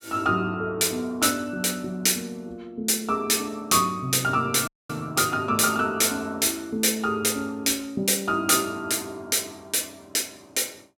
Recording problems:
audio cutting out; at 4.5 s

